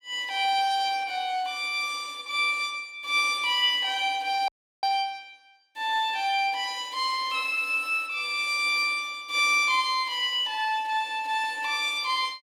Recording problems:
audio cutting out; at 4.5 s

